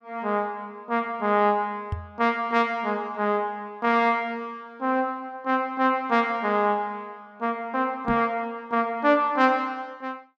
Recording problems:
knock on the microphone; at 2 s and at 8 s; peak -1 dB vs average level

